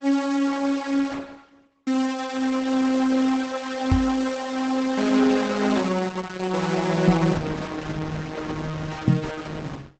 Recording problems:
lossy codec; Opus, log-spectral distance 5 dB, nothing above 8 kHz
microphone bump; at 4 s, at 7 s and at 9 s; peak +9 dB vs average level

